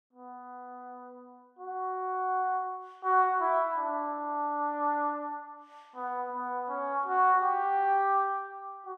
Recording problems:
none

